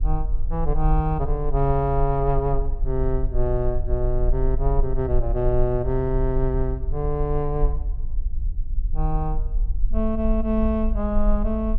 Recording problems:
low-frequency rumble; below 46 Hz, SNR 2 dB

